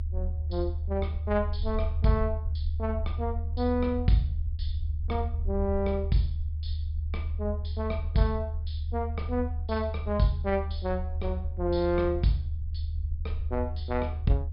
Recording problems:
low-pass filter; nothing above 5.5 kHz
low-frequency rumble; below 78 Hz, strongest tone 76 Hz, SNR 2 dB

